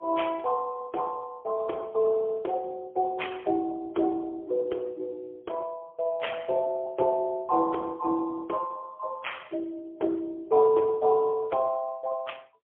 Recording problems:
telephone audio; 280 Hz to 3.3 kHz, AMR-NB, then MP3

